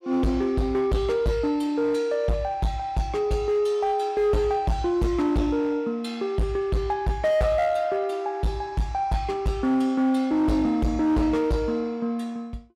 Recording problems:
distortion; hard clipping, signal-to-distortion ratio 11 dB

